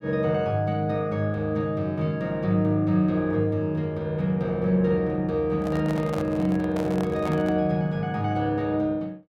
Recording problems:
handling noise; from 5.5 to 7.5 s; peak -5 dB vs average level

